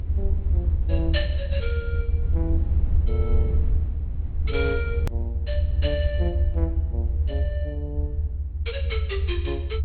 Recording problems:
treble missing; nothing above 4.4 kHz
low-frequency rumble; below 78 Hz, SNR -8 dB
edit click; at 5 s

